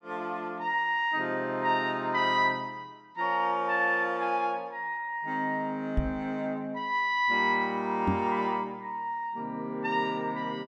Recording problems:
knock on the microphone; at 6 s and at 8 s; peak +4 dB vs average level

